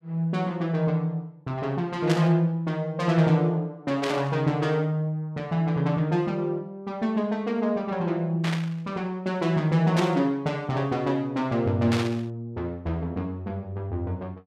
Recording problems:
burst of static; 5 times, first at 2 s; peak -1 dB vs average level

